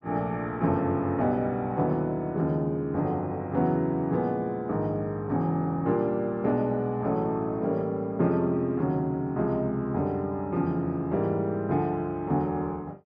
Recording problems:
none

